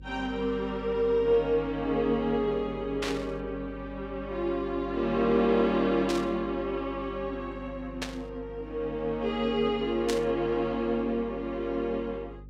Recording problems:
hum; 50 Hz, harmonics up to 550 Hz, SNR 17 dB
burst of static; 4 times, first at 3 s; peak 0 dB vs average level

